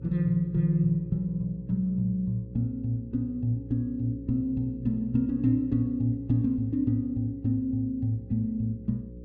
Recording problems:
electrical hum; 60 Hz, harmonics up to 540 Hz, SNR 17 dB

